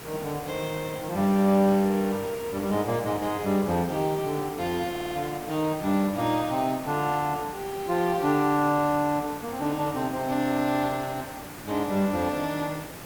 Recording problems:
background hiss; slope -5 dB per octave, SNR 13 dB
audio stuttering; at 5 s

